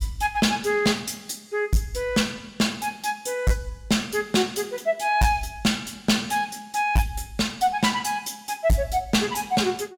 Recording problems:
distortion; hard clipping, uneven, signal-to-distortion ratio 10 dB

